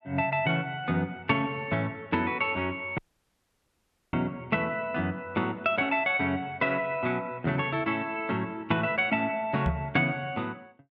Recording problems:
dropout; at 3 s for 1 s
microphone thump; at 9.5 s; peak +2 dB vs average level

